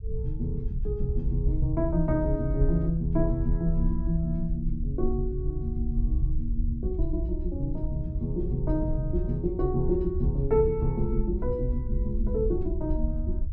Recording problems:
rumble; below 62 Hz, SNR 2 dB

